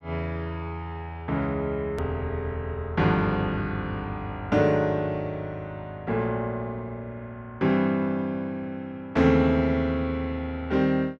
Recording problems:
click at an edit; at 2 s

